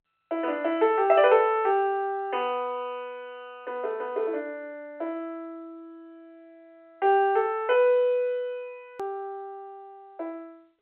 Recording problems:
telephone audio; 300 Hz to 3.3 kHz, G.711
click at an edit; at 9 s

